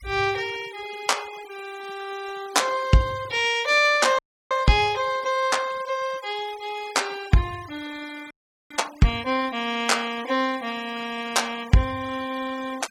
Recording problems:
denoising artefacts; signal-to-artefact ratio 20 dB
frozen audio; at 4 s and at 8.5 s

